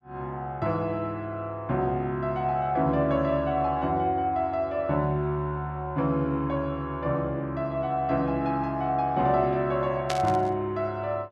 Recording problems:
burst of static; at 10 s; peak 0 dB vs average level

